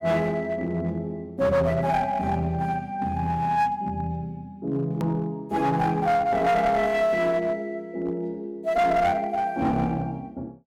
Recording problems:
distorted audio; hard clipping, uneven, signal-to-distortion ratio 10 dB
hard cut with a click; at 5 s

